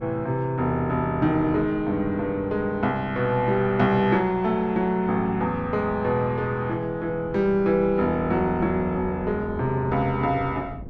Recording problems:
wind on the microphone; below 280 Hz, SNR 18 dB

